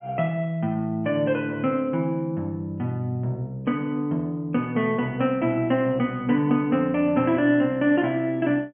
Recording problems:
treble cut off; nothing above 3.3 kHz

